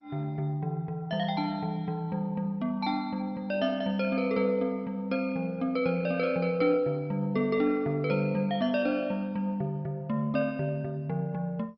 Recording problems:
codec artefacts; MP2, log-spectral distance 2 dB, nothing above 4.9 kHz

